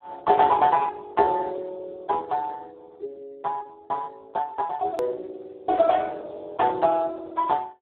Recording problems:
telephone audio; 320 Hz to 2.2 kHz, Speex
click at an edit; at 5 s

